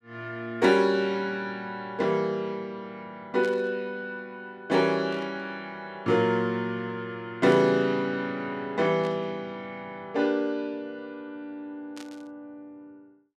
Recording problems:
burst of static; 5 times, first at 3.5 s; peak -12 dB vs average level

